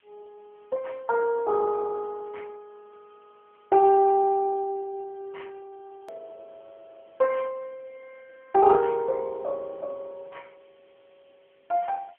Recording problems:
telephone audio; 150 Hz to 2.8 kHz, AMR-NB
hiss; SNR 41 dB
click at an edit; at 6 s

